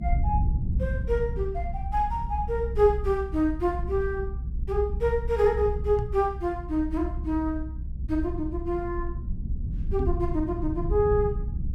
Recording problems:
low-frequency rumble; below 88 Hz, SNR 4 dB
microphone thump; at 6 s and at 10 s; peak 0 dB vs average level

